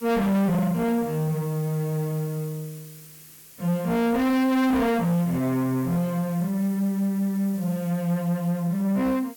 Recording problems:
distorted audio; soft clipping, signal-to-distortion ratio 6 dB
background hiss; SNR 20 dB

